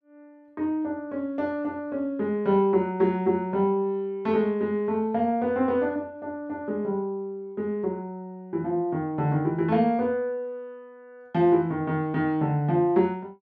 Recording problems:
none

